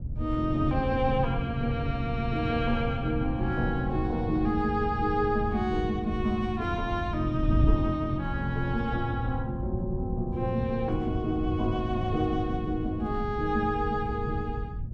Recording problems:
wind on the microphone; below 110 Hz, SNR 5 dB

